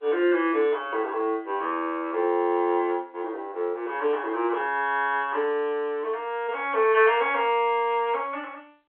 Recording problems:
telephone audio; 300 Hz to 3.5 kHz, G.711

